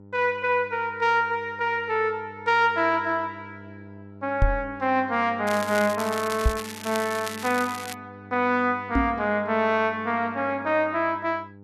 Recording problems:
hum; 50 Hz, harmonics up to 1 kHz, SNR 21 dB
microphone thump; at 4.5 s, at 6.5 s and at 9 s; peak +5 dB vs average level
crackling; from 5.5 to 8 s; loose cable, SNR 12 dB

